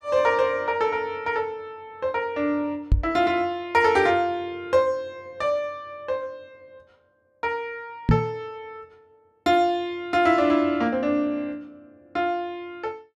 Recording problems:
knock on the microphone; at 3 s and at 8 s; peak +9 dB vs average level

